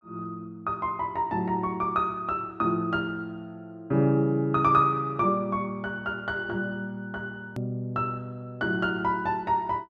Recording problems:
click at an edit; at 7.5 s

